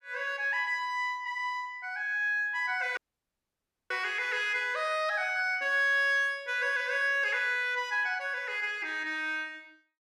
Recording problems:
dropout; at 3 s for 1 s

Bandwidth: 14.5 kHz